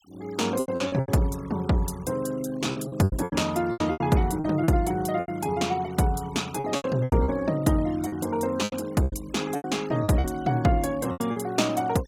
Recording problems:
noise reduction artefacts; signal-to-artefact ratio 22 dB
packet loss; 13% of the sound replaced, filled with repeated pitch periods

